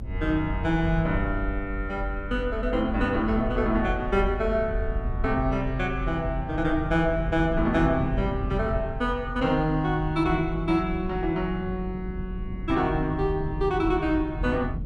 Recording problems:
low-frequency rumble; below 70 Hz, strongest tone 44 Hz, SNR 8 dB
wind noise; below 200 Hz, SNR 14 dB

